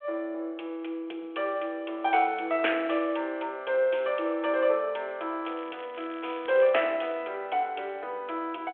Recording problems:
phone line; 340 Hz to 3.5 kHz, G.726
crackle; from 5.5 to 7 s; loose cable, SNR 22 dB

